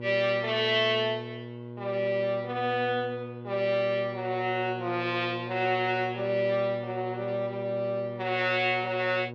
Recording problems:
electrical hum; 60 Hz, harmonics up to 1.1 kHz, SNR 11 dB

